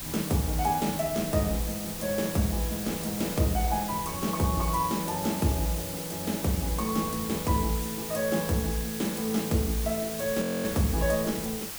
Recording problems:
hiss; slope 0 dB per octave, SNR 6 dB
wind on the microphone; below 270 Hz, SNR 19 dB
crackling; at 2 s; loose cable, SNR 26 dB
frozen audio; at 10 s

